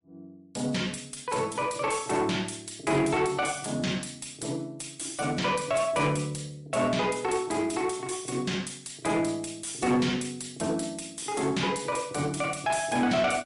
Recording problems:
lossy compression; MP3, log-spectral distance 6 dB, nothing above 11 kHz
distortion; soft clipping, signal-to-distortion ratio 12 dB

